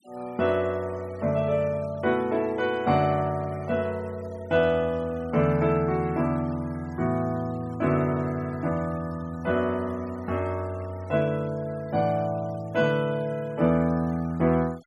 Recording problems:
noise reduction artefacts; signal-to-artefact ratio 25 dB

